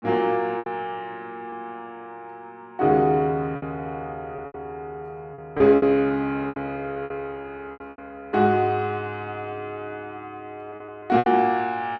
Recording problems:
packet loss; 8% of the sound replaced, filled with repeated pitch periods

